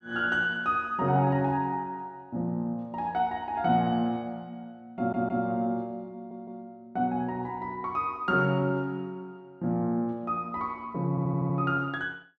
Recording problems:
stutter; at 5 s, at 6 s and at 11 s

